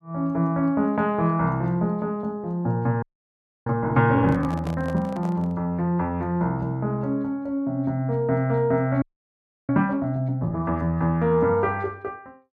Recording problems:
frozen audio; at 3 s for 0.5 s and at 9 s for 0.5 s
handling noise; from 4.5 to 5.5 s; peak -8 dB vs average level

